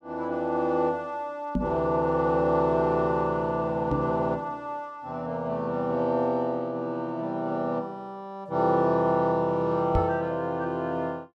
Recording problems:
microphone thump; at 1.5 s, at 4 s and at 10 s; peak +4 dB vs average level

